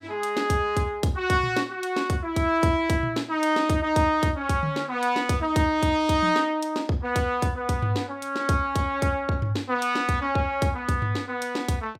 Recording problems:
none

